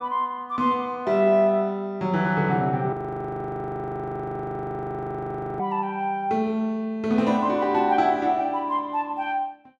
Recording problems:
audio freezing; at 3 s for 2.5 s

